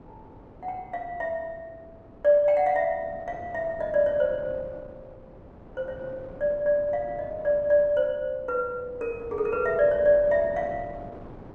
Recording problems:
wind on the microphone; below 580 Hz, SNR 19 dB

